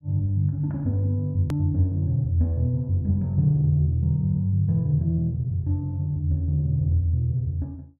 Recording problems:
edit click; at 1.5 s

